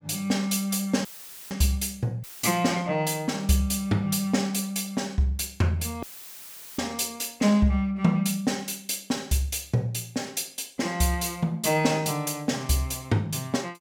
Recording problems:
audio cutting out; at 1 s, at 2 s and at 6 s for 1 s; filled with static

